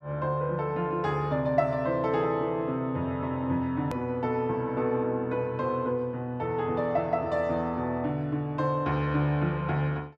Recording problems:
click at an edit; at 4 s

